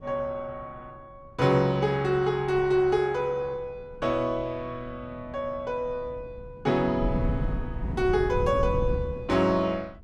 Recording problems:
wind on the microphone; below 160 Hz, SNR 7 dB

